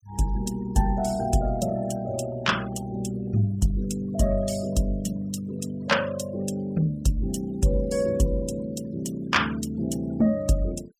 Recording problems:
denoising artefacts; signal-to-artefact ratio 18 dB

